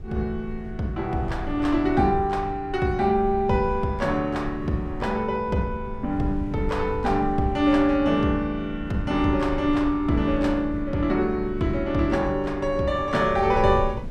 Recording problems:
wind noise; below 100 Hz, SNR 12 dB

